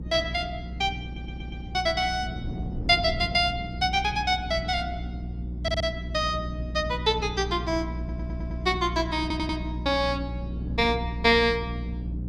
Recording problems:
hum; 60 Hz, harmonics up to 360 Hz, SNR 9 dB
wind noise; below 230 Hz, SNR 14 dB
audio stuttering; 4 times, first at 1 s

